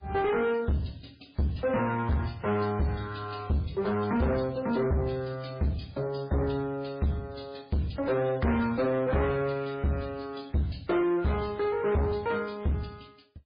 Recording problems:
codec artefacts; MP3, then MP3, log-spectral distance 4 dB, nothing above 4.4 kHz
distortion; soft clipping, signal-to-distortion ratio 6 dB

